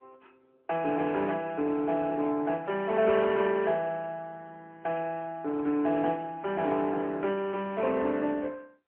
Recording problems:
telephone audio; 240 Hz to 3.2 kHz, AMR-NB

